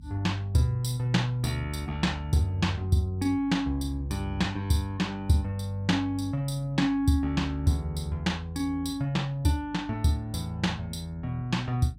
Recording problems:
hum; 50 Hz, harmonics up to 300 Hz, SNR 20 dB

